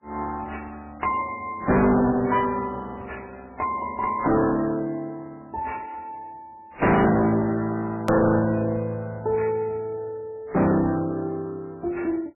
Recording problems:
lossy codec; Vorbis, then MP3, log-spectral distance 3 dB, nothing above 13.1 kHz
distortion; hard clipping, uneven, signal-to-distortion ratio 6 dB
click at an edit; at 8 s

